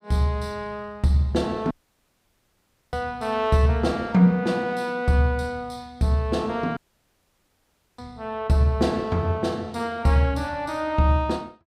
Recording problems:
audio cutting out; at 1.5 s for 1 s and at 7 s for 1 s

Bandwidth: 15.5 kHz